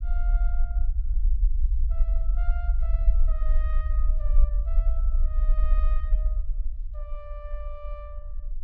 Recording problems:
low-frequency rumble; below 46 Hz, strongest tone 26 Hz, SNR -18 dB

